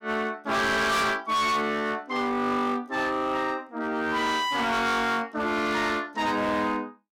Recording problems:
distortion; hard clipping, signal-to-distortion ratio 7 dB

